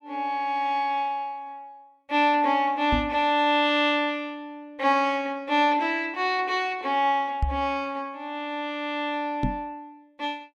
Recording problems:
microphone bump; at 3 s, at 7.5 s and at 9.5 s; peak +3 dB vs average level

